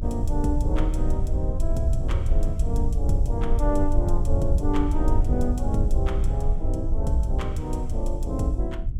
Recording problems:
rumble; below 66 Hz, strongest tone 22 Hz, SNR -3 dB

